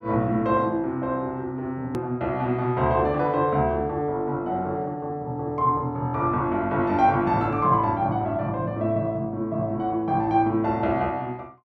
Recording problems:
hard cut with a click; at 2 s

